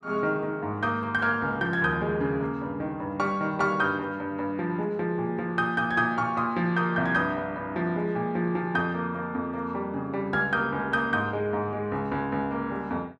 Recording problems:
none

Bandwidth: 12 kHz